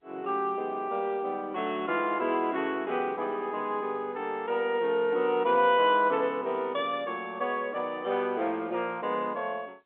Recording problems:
phone line; 220 Hz to 3.7 kHz, G.711

